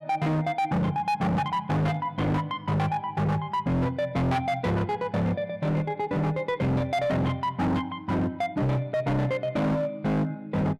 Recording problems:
distorted audio; hard clipping, signal-to-distortion ratio 6 dB

